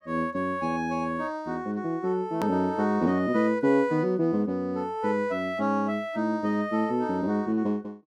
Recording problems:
click at an edit; at 2.5 s

